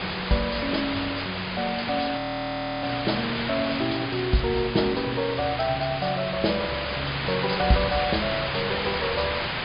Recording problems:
low-pass filter; nothing above 5 kHz
background hiss; SNR 2 dB
frozen audio; at 2 s for 0.5 s

